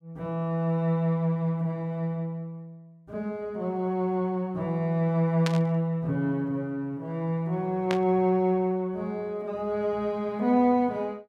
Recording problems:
static burst; at 5.5 s and at 8 s; peak 0 dB vs average level

